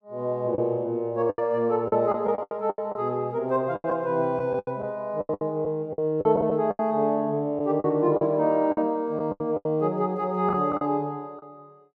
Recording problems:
lost packets; 12% of the sound replaced, filled with the last packet

